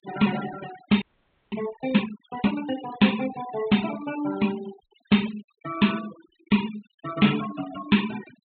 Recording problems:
low-pass filter; nothing above 4 kHz
denoising artefacts; signal-to-artefact ratio 13 dB
audio freezing; at 1 s for 0.5 s

